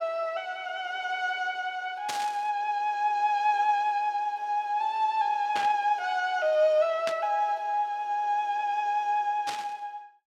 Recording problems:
burst of static; 4 times, first at 2 s; peak -2 dB vs average level

